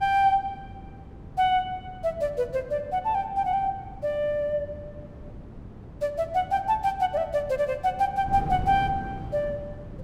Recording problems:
wind on the microphone; below 250 Hz, SNR 14 dB

